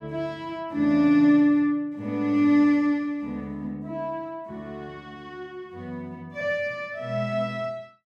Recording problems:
none

